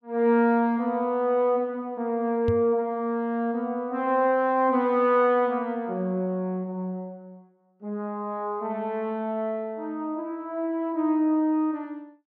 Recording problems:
knock on the microphone; at 2.5 s; peak +1 dB vs average level

